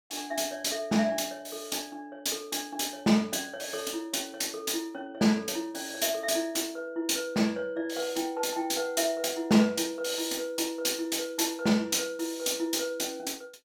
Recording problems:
none

